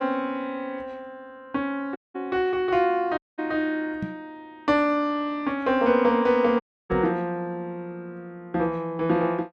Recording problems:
audio cutting out; at 2 s, at 3 s and at 6.5 s
microphone thump; at 4 s and at 7 s; peak -1 dB vs average level

